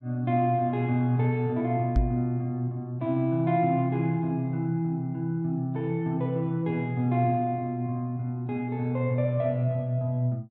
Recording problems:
microphone bump; at 2 s; peak +6 dB vs average level

